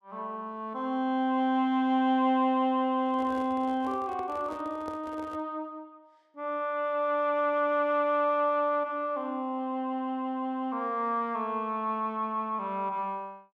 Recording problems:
handling noise; from 3 to 5.5 s; peak -9 dB vs average level

